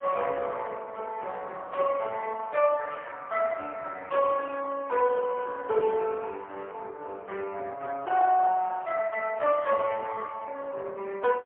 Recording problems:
phone line; 320 Hz to 3 kHz, AMR-NB, then MP3

